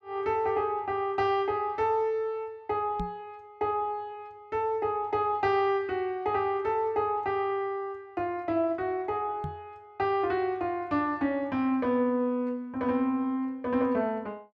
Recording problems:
microphone thump; at 3 s and at 9.5 s; peak -3 dB vs average level

